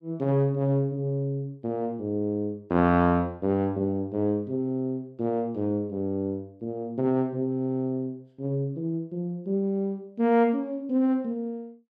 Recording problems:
none

